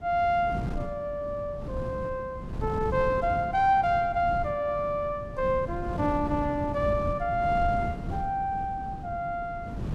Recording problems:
wind on the microphone; below 220 Hz, SNR 8 dB

